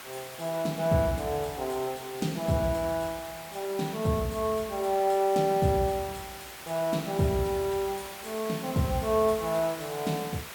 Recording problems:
background hiss; SNR 12 dB

